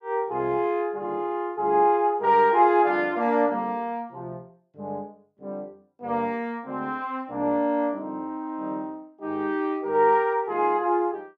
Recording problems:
none

